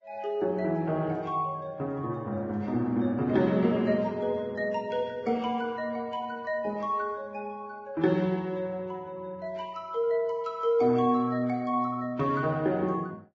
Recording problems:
lossy codec; Vorbis, log-spectral distance 2 dB, nothing above 7.3 kHz

